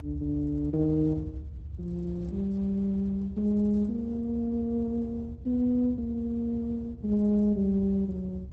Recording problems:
lossy compression; Opus, then Opus, log-spectral distance 2 dB
rumble; below 94 Hz, strongest tone 72 Hz, SNR 11 dB

